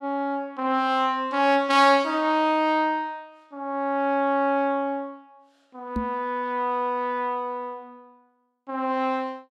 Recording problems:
microphone thump; at 6 s; peak -1 dB vs average level

